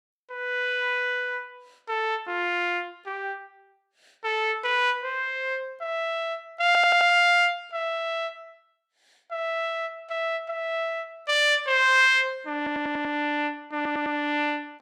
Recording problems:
audio stuttering; at 6.5 s, at 13 s and at 14 s

